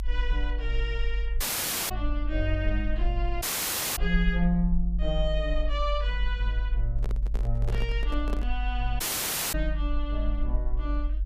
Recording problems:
low-frequency rumble; below 50 Hz, strongest tone 48 Hz, SNR -2 dB
audio cutting out; at 1.5 s for 0.5 s, at 3.5 s for 0.5 s and at 9 s for 0.5 s
microphone handling noise; from 7 to 8.5 s; peak -1 dB vs average level

